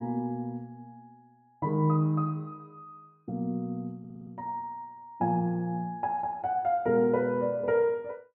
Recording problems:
stutter; at 4 s

